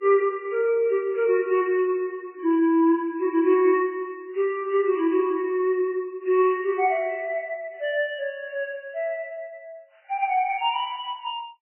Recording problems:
lossy codec; MP3, then MP3, log-spectral distance 2 dB, nothing above 2.6 kHz

